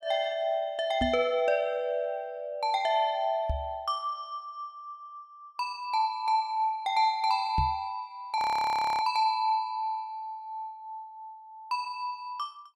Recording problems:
microphone bump; at 1 s, at 3.5 s and at 7.5 s; peak +3 dB vs average level
audio freezing; at 8.5 s for 0.5 s

